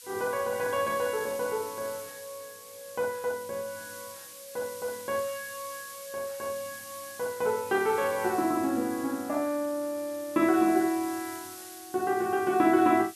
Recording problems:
background hiss; slope +5 dB per octave, SNR 14 dB

